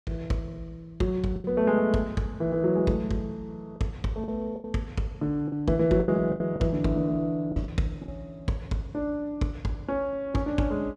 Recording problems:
packet loss; 6% of the sound replaced, filled with the last packet

